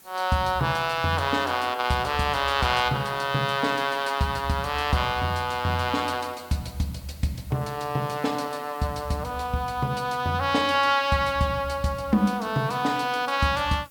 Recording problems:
hiss; slope -1 dB per octave, SNR 25 dB

